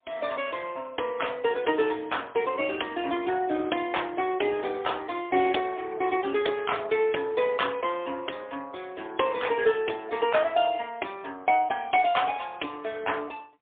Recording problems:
telephone audio; 260 Hz to 3.5 kHz, AMR-NB, then MP3

